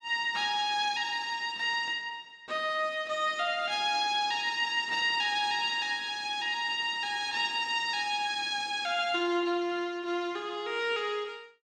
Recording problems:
none

